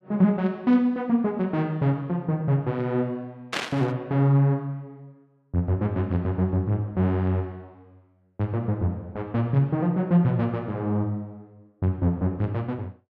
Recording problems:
static burst; at 3.5 s; peak +2 dB vs average level

